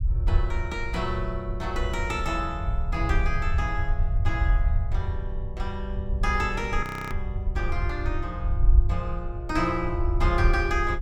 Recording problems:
rumble; below 68 Hz, SNR -1 dB
audio freezing; at 7 s

